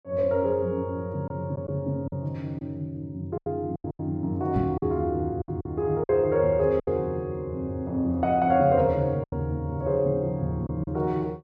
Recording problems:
packet loss; 6% of the sound replaced, filled with silence
microphone thump; at 4.5 s; peak +2 dB vs average level

